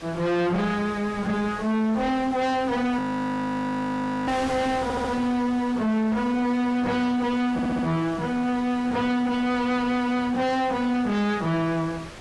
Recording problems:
lossy compression; AAC, log-spectral distance 2 dB, nothing above 11.3 kHz
distorted audio; soft clipping, signal-to-distortion ratio 7 dB
wind on the microphone; below 2.8 kHz, SNR 15 dB
audio freezing; at 3 s for 1.5 s
audio stuttering; at 5 s and at 7.5 s

